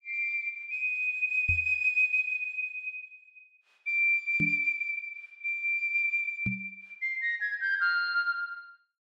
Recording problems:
microphone thump; at 1.5 s, at 4.5 s and at 6.5 s; peak -1 dB vs average level

